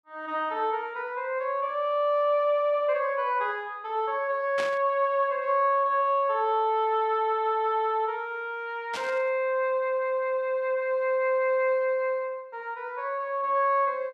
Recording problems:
burst of static; at 4.5 s and at 9 s; peak -4 dB vs average level

